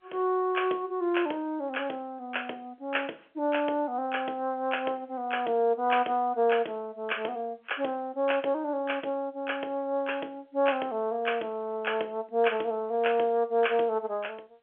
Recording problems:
phone line; 320 Hz to 3.4 kHz, G.711

